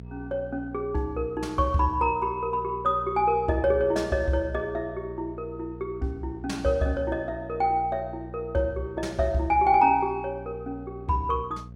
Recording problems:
hum; 60 Hz, harmonics up to 480 Hz, SNR 16 dB

